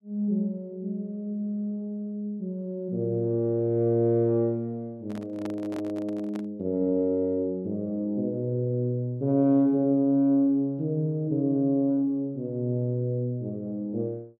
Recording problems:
handling noise; from 5 to 6.5 s; peak -7 dB vs average level

